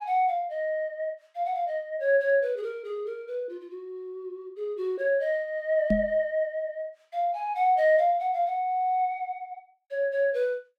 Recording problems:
microphone thump; at 6 s; peak +4 dB vs average level

